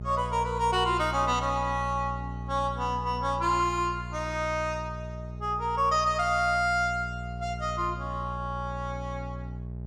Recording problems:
hum; 60 Hz, harmonics up to 660 Hz, SNR 9 dB

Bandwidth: 15.5 kHz